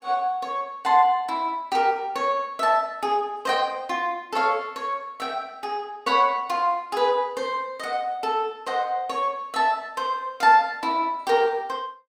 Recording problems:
none

